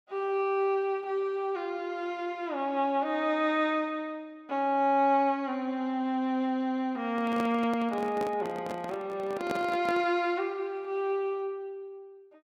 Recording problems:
handling noise; from 7 to 10 s; peak -1 dB vs average level

